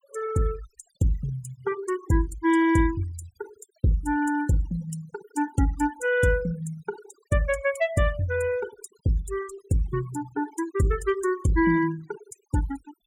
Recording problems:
denoising artefacts; signal-to-artefact ratio 18 dB

